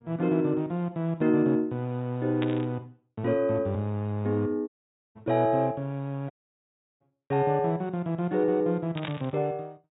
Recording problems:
low-pass filter; nothing above 4 kHz
static burst; at 2.5 s and at 9 s; peak -4 dB vs average level
audio cutting out; at 4.5 s and at 6.5 s for 0.5 s

